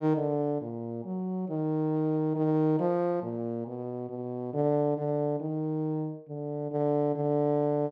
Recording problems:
none

